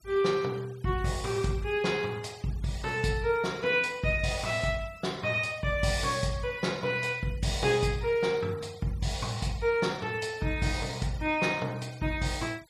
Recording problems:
noise reduction artefacts; signal-to-artefact ratio 22 dB

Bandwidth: 14.5 kHz